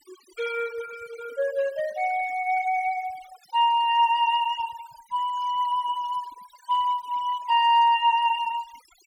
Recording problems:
noise reduction artefacts; signal-to-artefact ratio 22 dB

